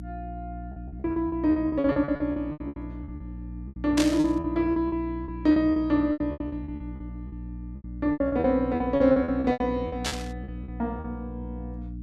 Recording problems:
electrical hum; 60 Hz, harmonics up to 300 Hz, SNR 12 dB
packet loss; 19% of the sound replaced, filled with repeated pitch periods
static burst; at 4 s and at 10 s; peak +1 dB vs average level

